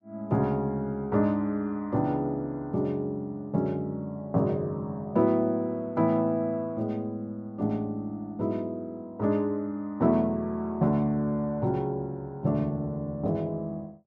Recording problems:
none

